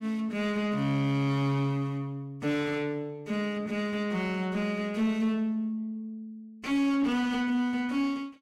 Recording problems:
distortion; soft clipping, signal-to-distortion ratio 11 dB

